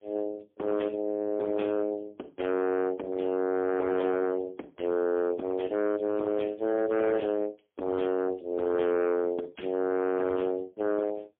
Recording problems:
telephone audio; 280 Hz to 3 kHz, AMR-NB, then MP3
distortion; hard clipping, uneven, signal-to-distortion ratio 12 dB

